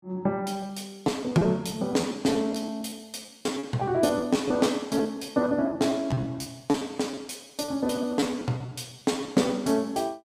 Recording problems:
packet loss; 13% of the sound replaced, filled with repeated pitch periods

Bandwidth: 15 kHz